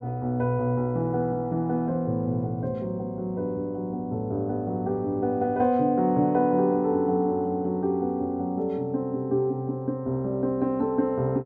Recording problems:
none

